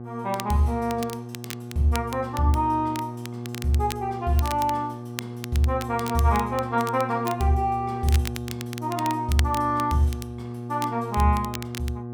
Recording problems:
hum; 60 Hz, harmonics up to 1.2 kHz, SNR 9 dB
crackle; vinyl, SNR 14 dB

